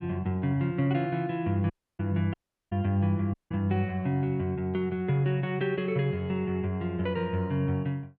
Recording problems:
audio cutting out; at 1.5 s, at 2.5 s and at 3.5 s

